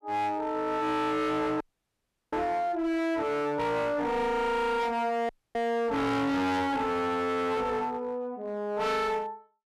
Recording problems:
distorted audio; hard clipping, uneven, signal-to-distortion ratio 6 dB
audio cutting out; at 1.5 s for 0.5 s and at 5.5 s

